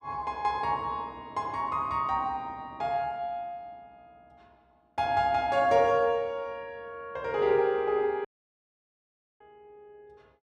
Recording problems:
audio cutting out; at 8.5 s for 1 s

